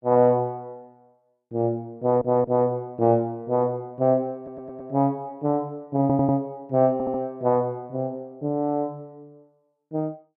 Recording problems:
stutter; 4 times, first at 2 s

